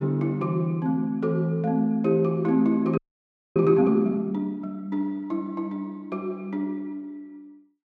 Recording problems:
frozen audio; at 3 s for 0.5 s

